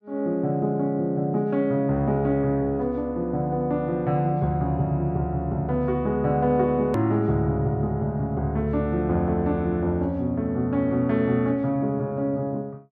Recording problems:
hard cut with a click; at 7 s

